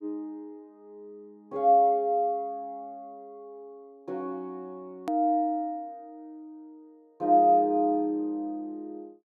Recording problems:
hard cut with a click; at 5 s

